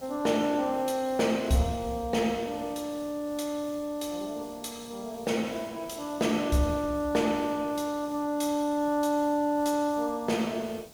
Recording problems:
hiss; SNR 21 dB

